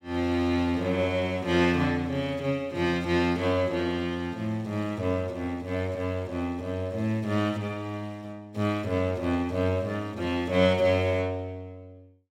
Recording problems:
none

